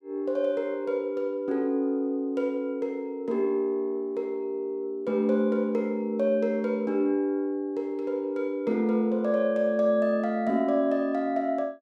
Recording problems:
none

